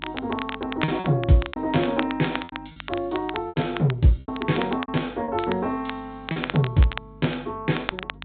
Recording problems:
low-pass filter; nothing above 4 kHz
hum; 50 Hz, harmonics up to 300 Hz, SNR 22 dB
crackling; vinyl, SNR 11 dB
lost packets; 7% of the sound replaced, filled with repeated pitch periods

